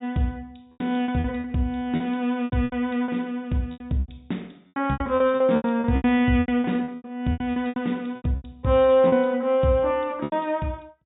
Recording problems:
low-pass filter; nothing above 4 kHz
lost packets; 17% of the sound replaced, filled with repeated pitch periods

